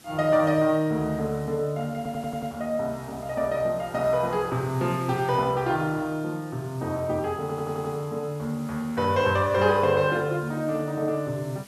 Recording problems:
hiss; SNR 23 dB
audio stuttering; at 2 s and at 7.5 s

